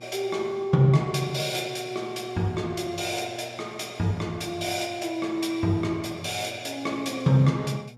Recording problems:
electrical hum; 60 Hz, harmonics up to 1.1 kHz, SNR 23 dB

